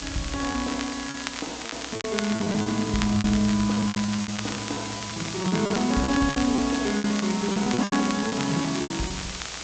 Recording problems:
treble cut off; nothing above 8 kHz
hum; 60 Hz, harmonics up to 720 Hz, SNR 25 dB
background hiss; slope 0 dB per octave, SNR 9 dB
crackle; vinyl, SNR 11 dB
packet loss; 16% of the sound replaced, filled with repeated pitch periods

